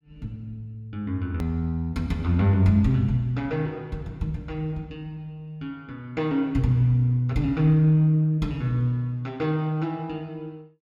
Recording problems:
edit click; at 1.5 s

